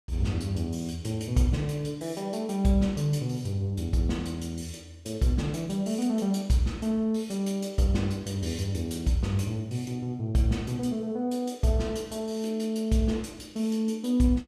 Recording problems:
none

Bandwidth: 14.5 kHz